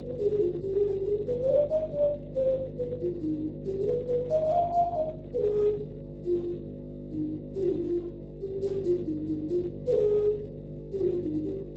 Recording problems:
lossy compression; Speex, log-spectral distance 2 dB
hum; 50 Hz, harmonics up to 650 Hz, SNR 11 dB

